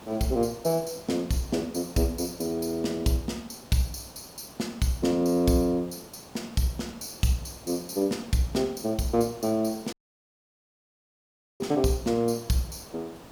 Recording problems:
background hiss; SNR 19 dB
audio cutting out; at 10 s for 1.5 s

